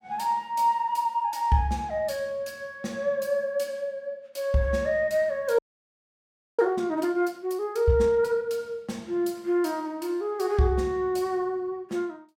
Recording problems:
frozen audio; at 5.5 s for 1 s

